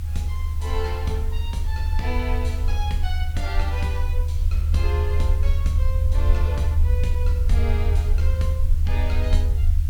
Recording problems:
background hiss; slope 0 dB per octave, SNR 16 dB
low-frequency rumble; below 78 Hz, SNR -9 dB

